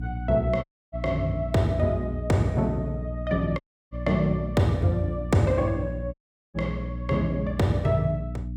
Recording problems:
mains hum; 60 Hz, harmonics up to 300 Hz, SNR 8 dB
audio cutting out; at 0.5 s, at 3.5 s and at 6 s

